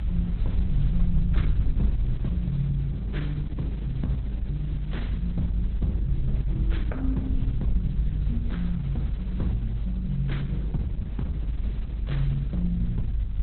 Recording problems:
lossy codec; Opus, log-spectral distance 2 dB, nothing above 4 kHz
mains hum; 50 Hz, harmonics up to 450 Hz, SNR 26 dB
background hiss; SNR 22 dB
rumble; below 60 Hz, strongest tone 52 Hz, SNR -2 dB

